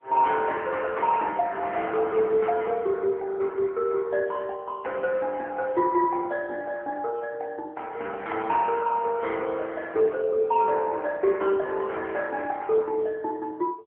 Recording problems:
telephone audio; 280 Hz to 2.6 kHz, AMR-NB

